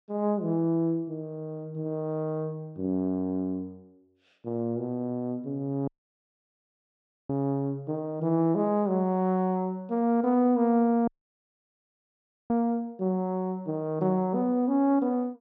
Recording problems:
audio cutting out; at 6 s for 1.5 s and at 11 s for 1.5 s

